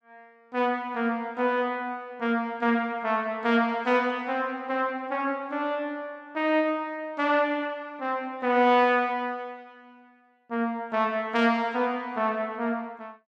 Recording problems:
none

